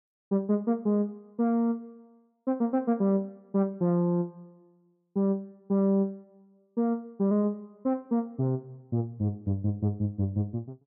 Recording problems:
none

